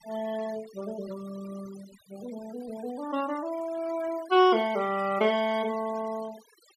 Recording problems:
denoising artefacts; signal-to-artefact ratio 19 dB

